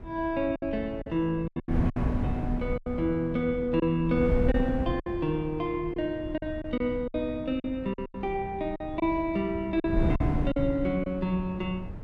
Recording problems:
wind noise; below 170 Hz, SNR 6 dB
lost packets; 9% of the sound replaced, filled with silence

